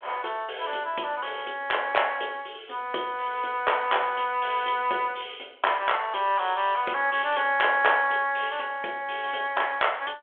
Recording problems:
phone line; 300 Hz to 3.4 kHz, G.726

